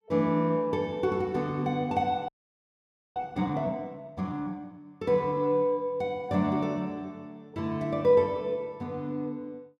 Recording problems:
frozen audio; at 2.5 s for 1 s

